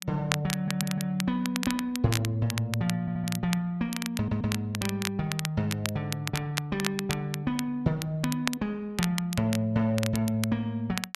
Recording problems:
crackling; vinyl, SNR 7 dB
stutter; at 0.5 s, at 3 s and at 4 s

